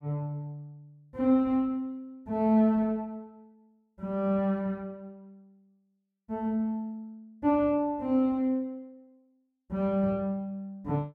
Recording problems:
none

